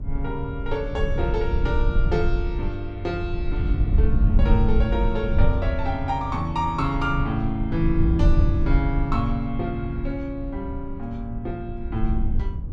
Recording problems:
low-frequency rumble; below 76 Hz, SNR -1 dB

